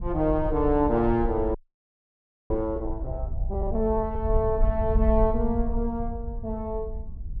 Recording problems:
wind on the microphone; below 66 Hz, SNR 5 dB
audio freezing; at 1.5 s for 1 s

